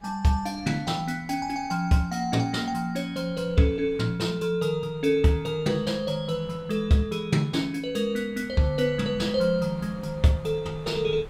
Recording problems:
wind on the microphone; below 440 Hz, SNR 22 dB

